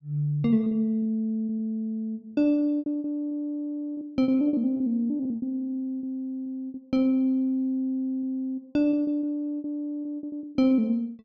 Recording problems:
lost packets; 13% of the sound replaced, filled with repeated pitch periods

